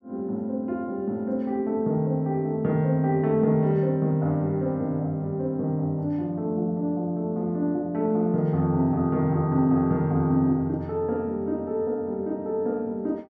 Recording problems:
none

